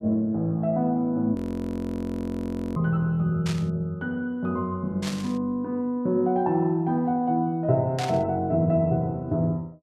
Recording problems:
audio freezing; at 1.5 s for 1.5 s
static burst; at 3.5 s, at 5 s and at 8 s; peak -4 dB vs average level

